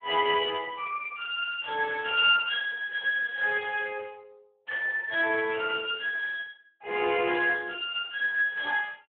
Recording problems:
phone line; 320 Hz to 3.3 kHz, Speex

